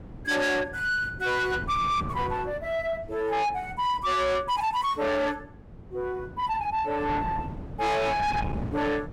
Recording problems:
distorted audio; soft clipping, signal-to-distortion ratio 8 dB
wind on the microphone; below 400 Hz, SNR 11 dB

